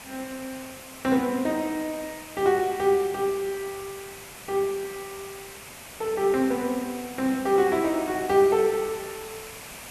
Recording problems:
background hiss; SNR 15 dB

